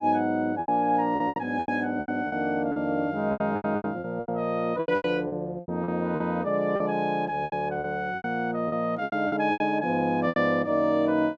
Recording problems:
packet loss; 15% of the sound replaced, filled with repeated pitch periods

